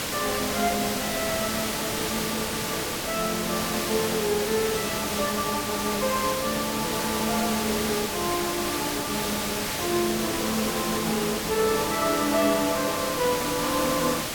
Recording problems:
background hiss; slope -2 dB per octave, SNR 0 dB

